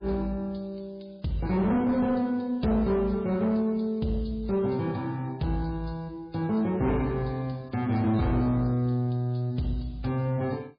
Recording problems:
codec artefacts; MP3, log-spectral distance 3 dB, nothing above 4.5 kHz
distorted audio; soft clipping, signal-to-distortion ratio 11 dB

